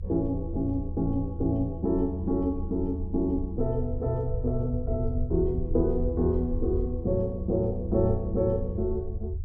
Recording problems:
rumble; below 82 Hz, SNR 5 dB

